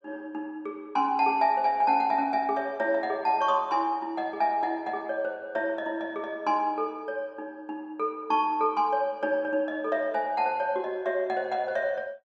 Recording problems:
none

